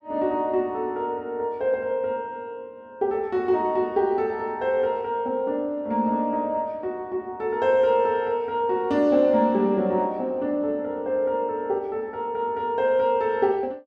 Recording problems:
none

